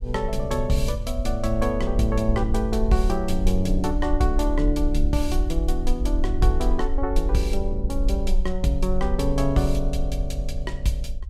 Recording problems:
rumble; below 48 Hz, SNR 2 dB

